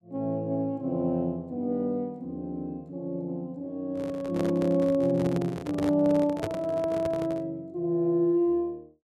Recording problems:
handling noise; from 4 to 7.5 s; peak 0 dB vs average level

